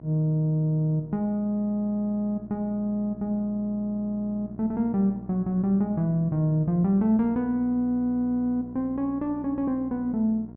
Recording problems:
hum; 60 Hz, harmonics up to 1 kHz, SNR 18 dB

